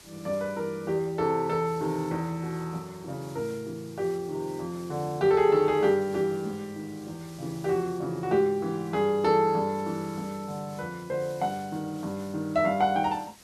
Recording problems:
background hiss; slope -1 dB per octave, SNR 22 dB

